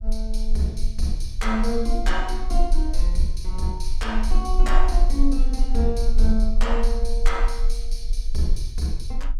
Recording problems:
low-frequency rumble; below 36 Hz, strongest tone 20 Hz, SNR -2 dB

